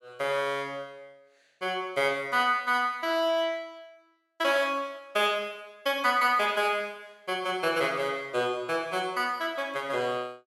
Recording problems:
none

